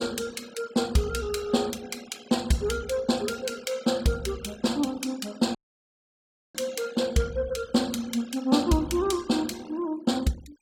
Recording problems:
denoising artefacts; signal-to-artefact ratio 20 dB
dropout; at 5.5 s for 1 s

